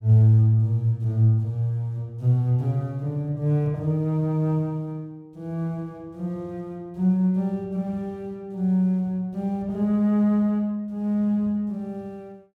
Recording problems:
none

